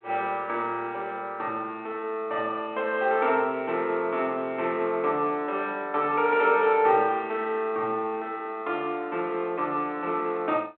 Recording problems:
phone line; 260 Hz to 3.4 kHz, G.726

